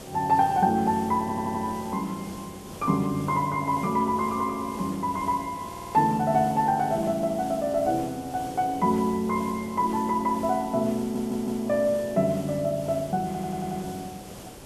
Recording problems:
background hiss; SNR 16 dB
audio stuttering; 4 times, first at 1 s

